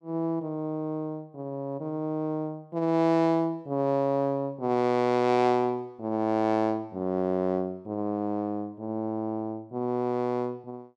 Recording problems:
none

